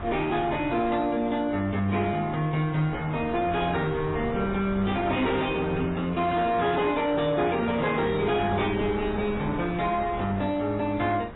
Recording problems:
lossy codec; AAC, then MP3, log-spectral distance 3 dB, nothing above 3.8 kHz
distortion; soft clipping, signal-to-distortion ratio 10 dB
wind noise; below 950 Hz, SNR 13 dB

